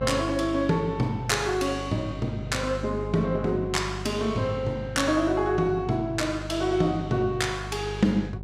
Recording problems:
hum; 50 Hz, harmonics up to 750 Hz, SNR 11 dB

